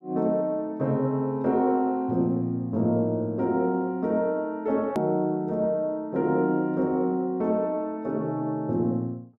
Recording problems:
hard cut with a click; at 5 s

